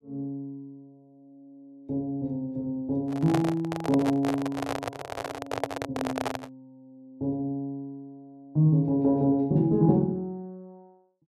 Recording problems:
handling noise; from 3 to 6.5 s; peak +2 dB vs average level

